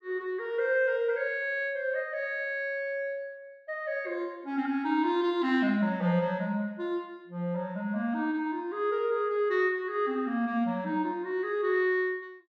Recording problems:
none

